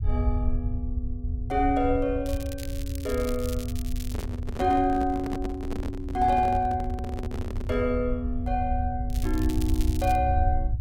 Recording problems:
rumble; below 84 Hz, SNR 4 dB
crackle; from 2.5 to 4.5 s and from 9 to 10 s; loose cable, SNR 15 dB
handling noise; from 4 to 8 s; peak -2 dB vs average level

